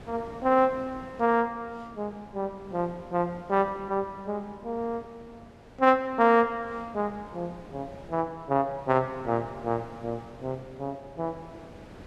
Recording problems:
wind noise; below 730 Hz, SNR 20 dB

